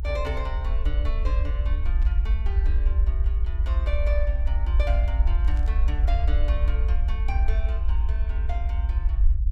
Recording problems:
rumble; below 60 Hz, SNR -12 dB
static burst; at 2 s and at 5.5 s; peak -11 dB vs average level

